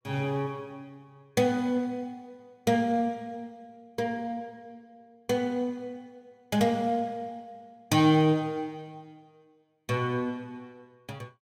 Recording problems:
none

